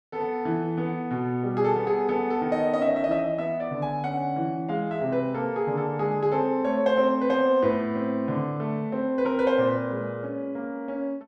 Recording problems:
none

